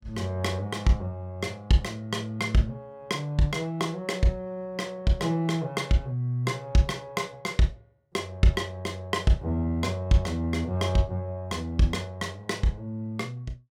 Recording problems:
none

